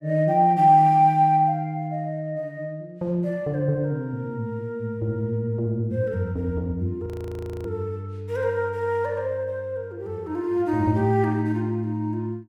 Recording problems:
frozen audio; at 7 s for 0.5 s

